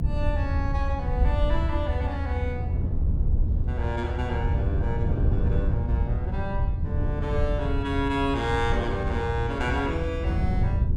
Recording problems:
low-frequency rumble; below 82 Hz, SNR -1 dB
wind noise; below 140 Hz, SNR 2 dB

